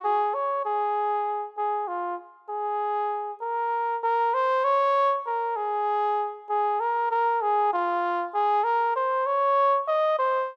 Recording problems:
none

